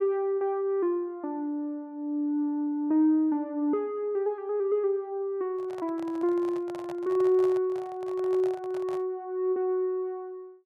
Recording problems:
microphone handling noise; from 5.5 to 9 s; peak -10 dB vs average level

